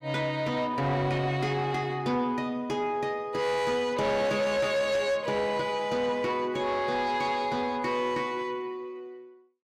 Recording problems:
distortion; soft clipping, signal-to-distortion ratio 11 dB

